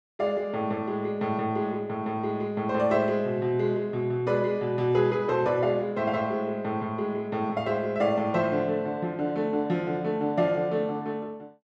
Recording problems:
none

